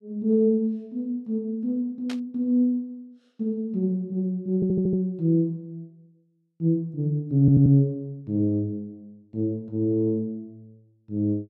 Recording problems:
static burst; at 2 s; peak -9 dB vs average level
stutter; at 4.5 s and at 7.5 s

